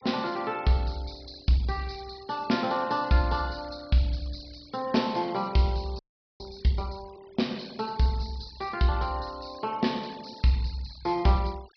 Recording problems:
treble missing; nothing above 5.5 kHz
noise reduction artefacts; signal-to-artefact ratio 22 dB
frozen audio; at 6 s

